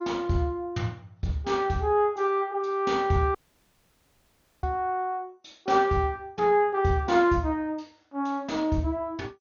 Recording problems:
codec artefacts; MP2, log-spectral distance 2 dB, nothing above 6.7 kHz
dropout; at 3.5 s for 1.5 s

